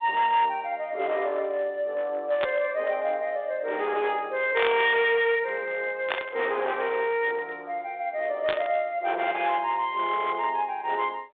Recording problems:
telephone audio; 320 Hz to 3.7 kHz, G.726
distorted audio; hard clipping, signal-to-distortion ratio 12 dB
burst of static; 4 times, first at 2.5 s; peak +2 dB vs average level

